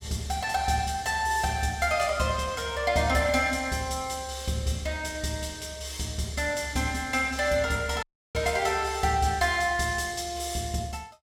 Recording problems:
audio cutting out; at 8 s

